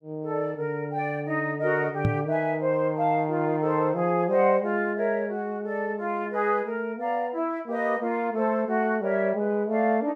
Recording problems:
microphone bump; at 2 s; peak +5 dB vs average level

